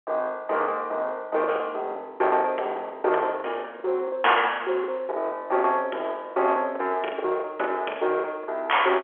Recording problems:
telephone audio; 320 Hz to 3.3 kHz, G.711
distortion; soft clipping, signal-to-distortion ratio 14 dB
packet loss; 13% of the sound replaced, filled with the last packet

